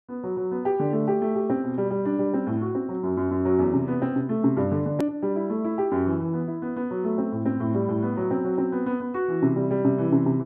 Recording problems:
edit click; at 5 s

